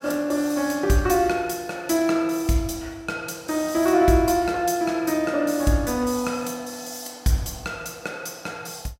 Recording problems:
none

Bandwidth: 16 kHz